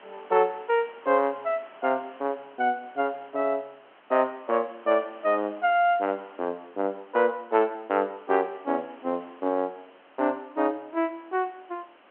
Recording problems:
phone line; 190 Hz to 3.3 kHz, G.711
background hiss; SNR 25 dB

